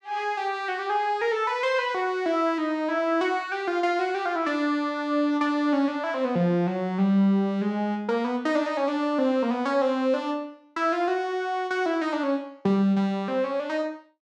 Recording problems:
none

